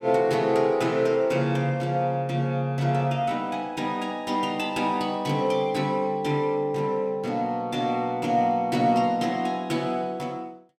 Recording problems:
none

